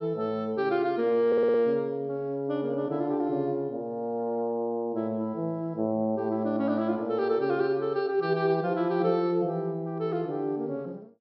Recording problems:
treble cut off; nothing above 5.6 kHz
audio stuttering; at 1.5 s

